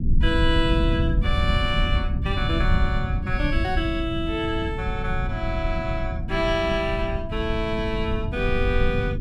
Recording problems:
rumble; below 110 Hz, SNR 1 dB

